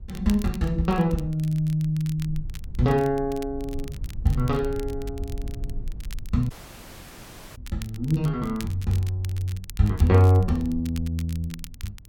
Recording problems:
rumble; below 72 Hz, SNR 15 dB
crackling; vinyl, SNR 21 dB
audio cutting out; at 6.5 s for 1 s

